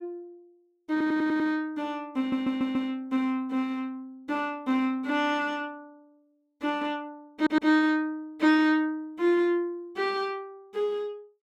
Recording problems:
stutter; at 1 s, at 2 s and at 7.5 s

